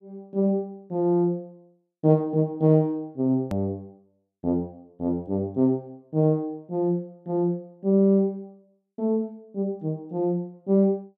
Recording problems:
edit click; at 3.5 s

